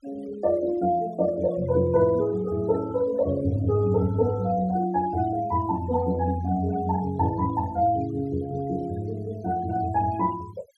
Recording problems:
noise reduction artefacts; signal-to-artefact ratio 22 dB

